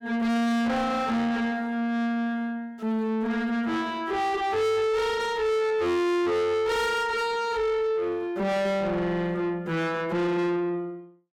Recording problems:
distorted audio; soft clipping, signal-to-distortion ratio 6 dB

